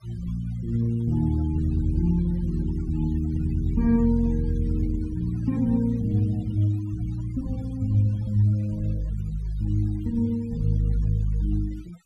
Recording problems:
noise reduction artefacts; signal-to-artefact ratio 24 dB

